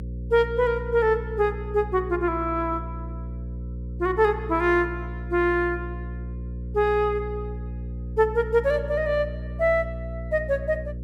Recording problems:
hum; 60 Hz, harmonics up to 540 Hz, SNR 10 dB

